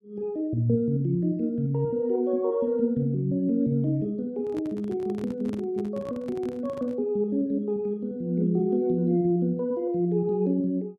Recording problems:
handling noise; from 4.5 to 7 s; peak -8 dB vs average level

